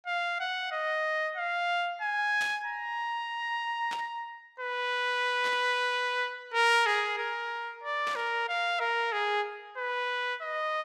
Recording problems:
static burst; 4 times, first at 2.5 s; peak -5 dB vs average level

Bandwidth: 15.5 kHz